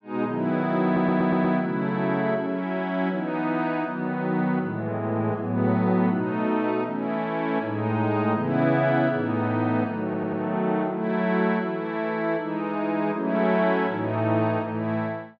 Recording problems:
stutter; at 1 s and at 10 s

